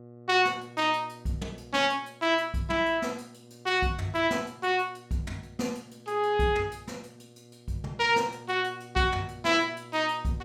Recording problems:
electrical hum; 60 Hz, harmonics up to 1.3 kHz, SNR 23 dB

